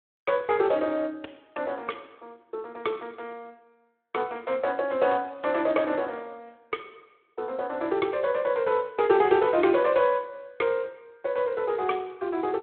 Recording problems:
phone line; 280 Hz to 3.5 kHz, Speex

